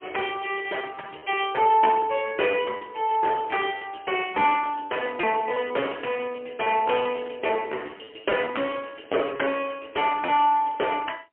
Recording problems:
phone line; 300 Hz to 3.2 kHz, AMR-NB, then MP3
lost packets; 16% of the sound replaced, filled with repeated pitch periods

